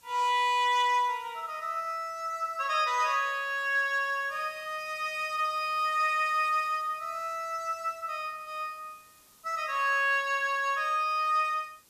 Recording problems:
hiss; SNR 28 dB

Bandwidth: 14.5 kHz